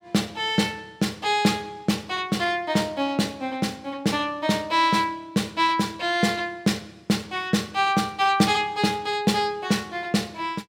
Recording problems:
none

